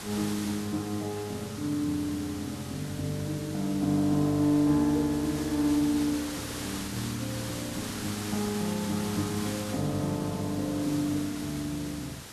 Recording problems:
background hiss; slope -2 dB per octave, SNR 9 dB

